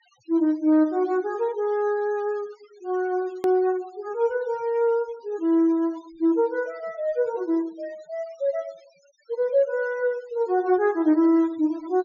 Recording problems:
treble missing; nothing above 7 kHz
noise reduction artefacts; signal-to-artefact ratio 28 dB
click at an edit; at 3.5 s

